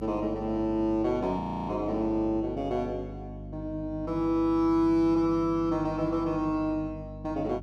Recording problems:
hum; 50 Hz, harmonics up to 300 Hz, SNR 13 dB
frozen audio; at 1.5 s

